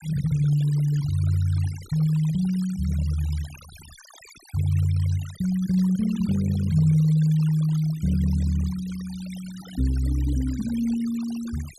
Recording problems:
noise reduction artefacts; signal-to-artefact ratio 20 dB

